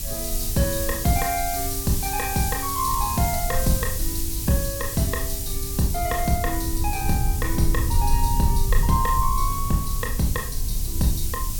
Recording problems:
background hiss; SNR 3 dB
low-frequency rumble; below 74 Hz, SNR 3 dB

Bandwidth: 17.5 kHz